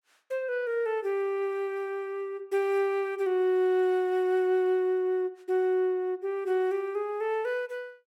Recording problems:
none

